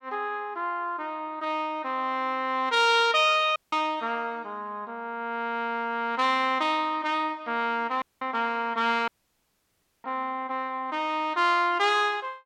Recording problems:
dropout; at 3.5 s, at 8 s and at 9 s for 1 s

